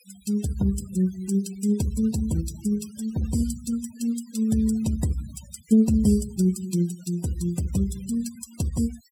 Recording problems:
denoising artefacts; signal-to-artefact ratio 19 dB

